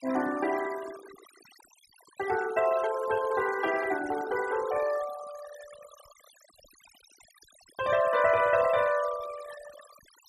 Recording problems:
noise reduction artefacts; signal-to-artefact ratio 15 dB

